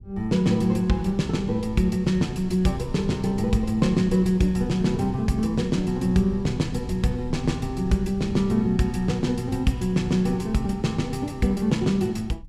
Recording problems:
low-frequency rumble; below 120 Hz, SNR 15 dB

